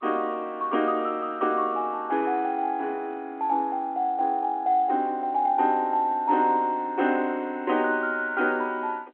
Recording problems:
telephone audio; 240 Hz to 3.4 kHz, G.711

